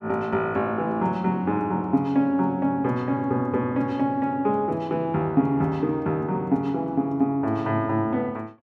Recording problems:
none

